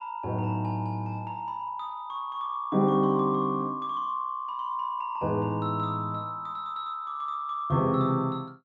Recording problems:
none

